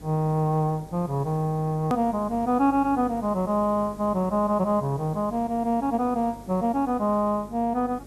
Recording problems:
hum; 50 Hz, harmonics up to 450 Hz, SNR 21 dB
hiss; SNR 23 dB
click at an edit; at 2 s

